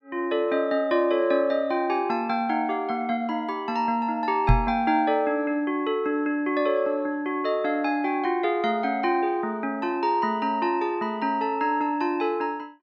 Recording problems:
microphone bump; at 4.5 s; peak +8 dB vs average level

